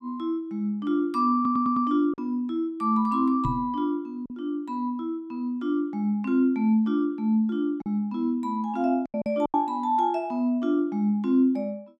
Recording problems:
packet loss; 3% of the sound replaced, filled with silence
audio stuttering; at 1.5 s
knock on the microphone; at 3.5 s; peak 0 dB vs average level

